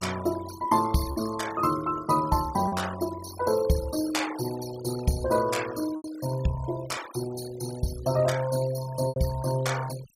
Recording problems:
denoising artefacts; signal-to-artefact ratio 14 dB
packet loss; 2% of the sound replaced, filled with repeated pitch periods

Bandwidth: 15.5 kHz